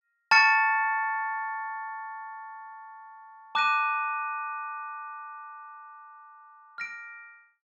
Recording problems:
none

